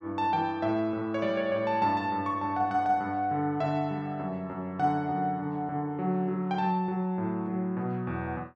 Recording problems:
none

